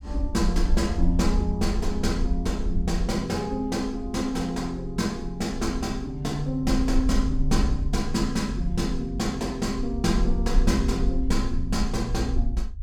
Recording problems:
low-frequency rumble; below 54 Hz, SNR 4 dB

